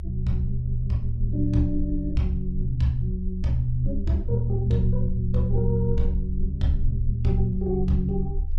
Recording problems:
low-frequency rumble; below 74 Hz, strongest tone 20 Hz, SNR 5 dB

